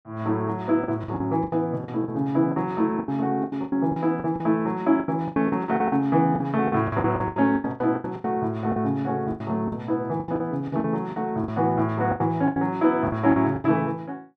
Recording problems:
packet loss; 17% of the sound replaced, filled with the last packet

